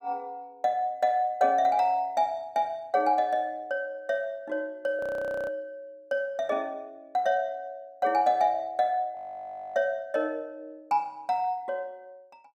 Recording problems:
frozen audio; at 5 s and at 9 s for 0.5 s

